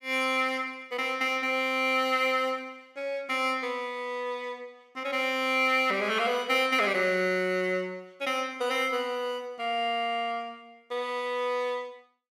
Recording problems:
none

